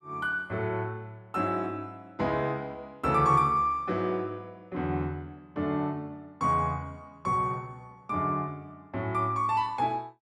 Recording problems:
none

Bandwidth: 13 kHz